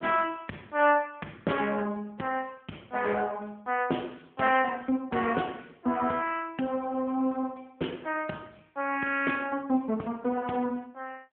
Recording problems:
phone line; 190 Hz to 3.3 kHz, AMR-NB

